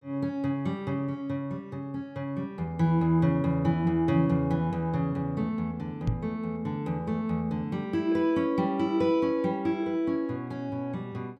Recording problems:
knock on the microphone; at 6 s; peak +4 dB vs average level

